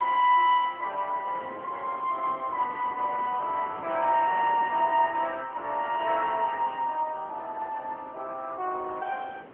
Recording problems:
telephone audio; 300 Hz to 2.8 kHz, AMR-NB
wind on the microphone; below 950 Hz, SNR 19 dB

